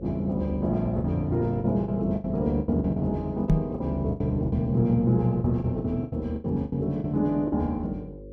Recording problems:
mains hum; 50 Hz, harmonics up to 550 Hz, SNR 17 dB
lost packets; 12% of the sound replaced, filled with the last packet
knock on the microphone; at 3.5 s; peak +8 dB vs average level

